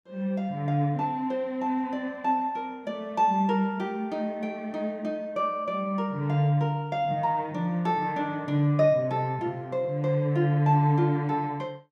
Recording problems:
none

